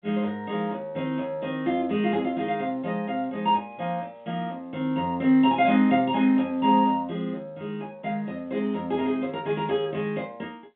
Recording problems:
phone line; 170 Hz to 3.7 kHz, G.711

